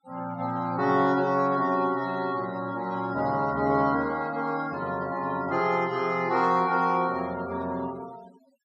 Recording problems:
denoising artefacts; signal-to-artefact ratio 21 dB

